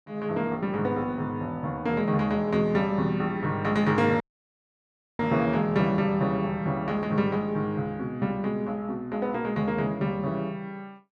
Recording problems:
audio cutting out; at 4 s for 1 s

